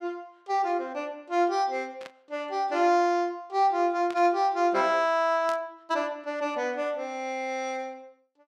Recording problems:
static burst; at 2 s, at 4 s and at 5.5 s; peak -10 dB vs average level

